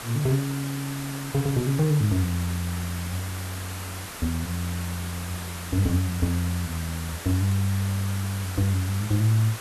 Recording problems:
hiss; slope -2 dB per octave, SNR 9 dB

